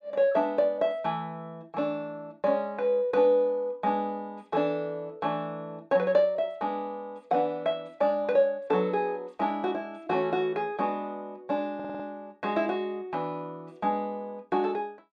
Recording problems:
stutter; at 12 s

